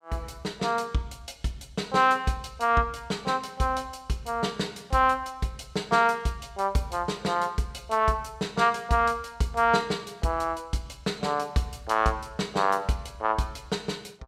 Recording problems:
none

